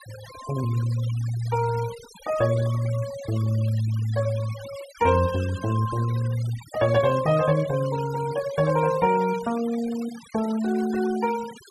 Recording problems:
noise reduction artefacts; signal-to-artefact ratio 16 dB

